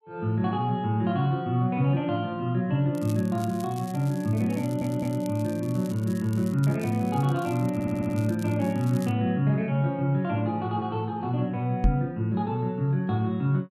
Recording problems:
crackling; from 3 to 9 s; loose cable, SNR 22 dB
stutter; at 4.5 s and at 7.5 s
microphone bump; at 12 s; peak +7 dB vs average level

